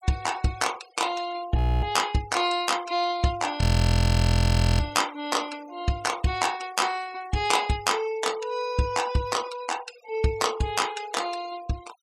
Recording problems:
denoising artefacts; signal-to-artefact ratio 18 dB
audio freezing; at 1.5 s and at 3.5 s for 1 s

